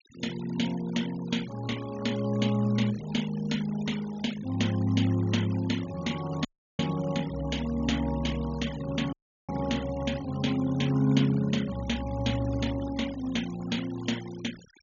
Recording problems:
treble cut off; nothing above 6.9 kHz
noise reduction artefacts; signal-to-artefact ratio 16 dB
audio cutting out; at 6.5 s and at 9 s

